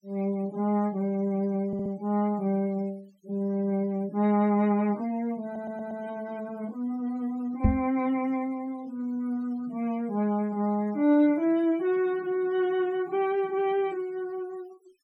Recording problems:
noise reduction artefacts; signal-to-artefact ratio 26 dB
stutter; at 1.5 s and at 5.5 s
microphone bump; at 7.5 s; peak +9 dB vs average level

